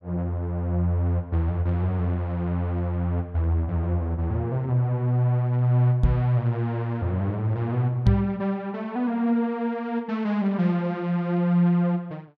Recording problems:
microphone bump; at 6 s and at 8 s; peak +8 dB vs average level

